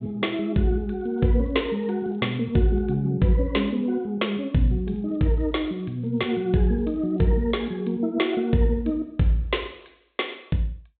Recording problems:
treble missing; nothing above 4 kHz
crackling; from 1 to 3 s and from 5 to 8 s; loose cable, SNR 42 dB

